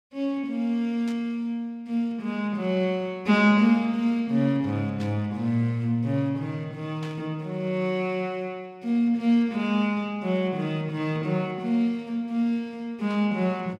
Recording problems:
static burst; 4 times, first at 1 s; peak -13 dB vs average level

